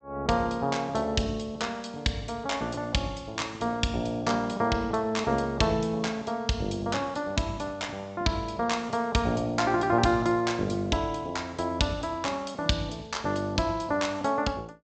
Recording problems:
treble missing; nothing above 8 kHz

